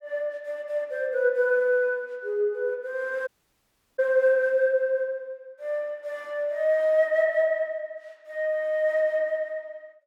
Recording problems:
audio cutting out; at 3.5 s for 0.5 s

